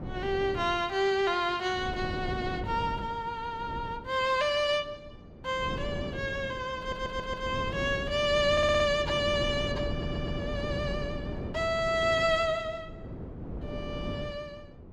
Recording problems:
wind noise; below 340 Hz, SNR 9 dB
audio stuttering; at 7 s, at 8.5 s and at 10 s

